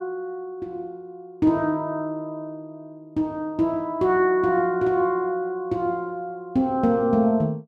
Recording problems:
none

